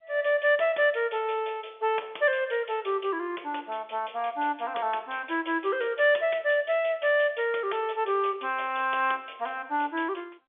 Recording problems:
phone line; 340 Hz to 3.5 kHz, G.711

